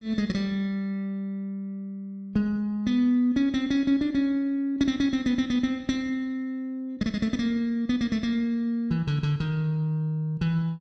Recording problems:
none

